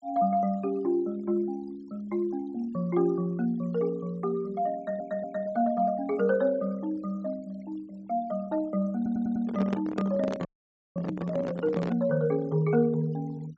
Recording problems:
treble cut off; nothing above 8 kHz
noise reduction artefacts; signal-to-artefact ratio 25 dB
stutter; at 5 s and at 9 s
handling noise; from 9 to 12 s; peak 0 dB vs average level
frozen audio; at 10 s for 0.5 s

